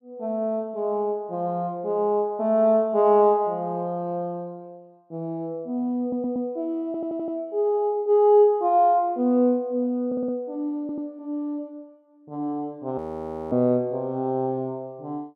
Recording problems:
audio stuttering; 4 times, first at 6 s
frozen audio; at 13 s for 0.5 s

